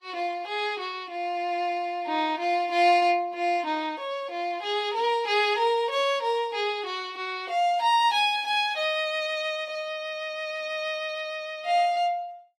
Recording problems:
codec artefacts; Vorbis, log-spectral distance 2 dB, nothing above 13.5 kHz

